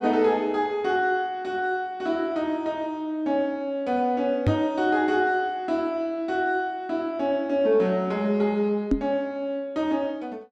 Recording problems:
microphone bump; at 4.5 s and at 9 s; peak +7 dB vs average level

